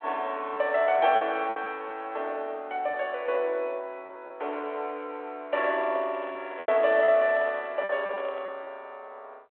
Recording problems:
phone line; 340 Hz to 3.6 kHz, G.726
lost packets; 6% of the sound replaced, filled with repeated pitch periods
microphone handling noise; from 5.5 to 8.5 s; peak -7 dB vs average level

